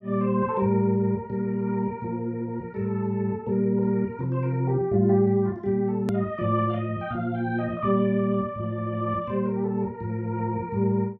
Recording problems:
edit click; at 6 s

